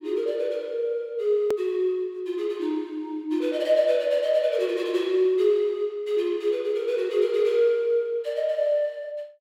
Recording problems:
click at an edit; at 1.5 s

